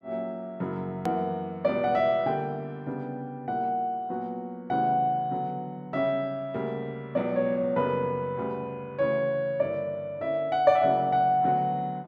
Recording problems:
hard cut with a click; at 1 s

